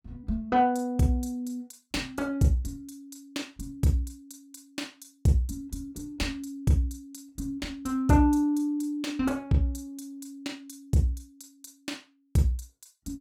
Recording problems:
none

